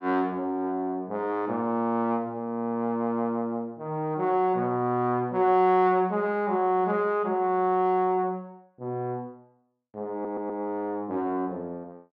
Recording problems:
audio stuttering; at 10 s

